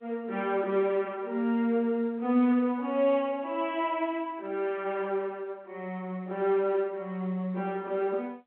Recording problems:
telephone audio; 240 Hz to 3.3 kHz, G.711

